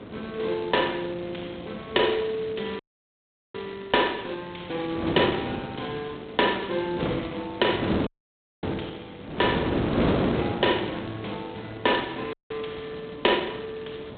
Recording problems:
telephone audio; 240 Hz to 3.9 kHz, G.726
wind on the microphone; below 600 Hz, SNR 4 dB
audio cutting out; at 3 s for 1 s, at 8 s for 0.5 s and at 12 s

